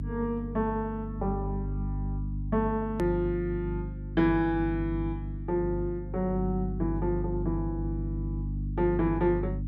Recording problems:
mains hum; 50 Hz, harmonics up to 300 Hz, SNR 4 dB
edit click; at 3 s

